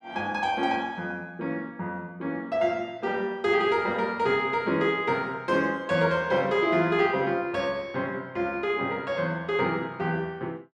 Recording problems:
none

